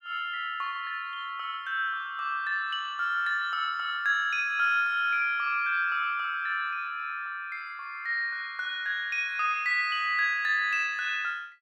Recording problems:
none

